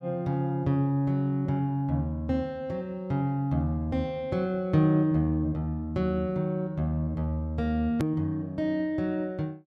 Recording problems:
hard cut with a click; at 8 s

